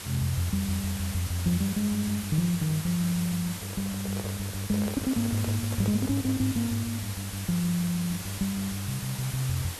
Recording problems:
background hiss; slope -1 dB per octave, SNR 8 dB
microphone handling noise; from 3.5 to 6.5 s; peak -5 dB vs average level

